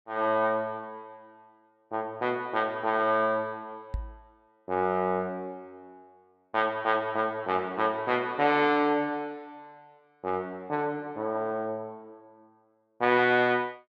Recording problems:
microphone bump; at 4 s; peak -2 dB vs average level

